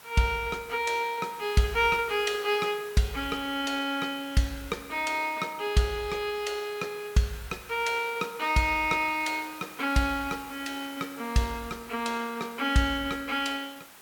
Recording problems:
hiss; SNR 18 dB

